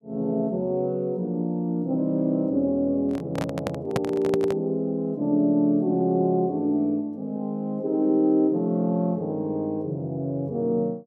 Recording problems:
handling noise; from 3 to 4.5 s; peak +3 dB vs average level

